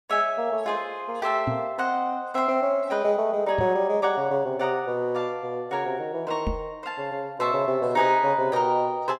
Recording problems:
microphone thump; at 1.5 s, at 3.5 s and at 6.5 s; peak 0 dB vs average level

